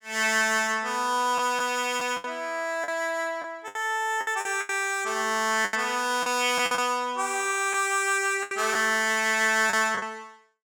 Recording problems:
lost packets; 8% of the sound replaced, filled with the last packet

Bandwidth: 17 kHz